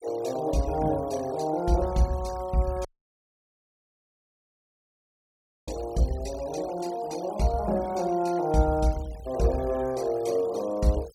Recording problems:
noise reduction artefacts; signal-to-artefact ratio 20 dB
dropout; at 3 s for 3 s

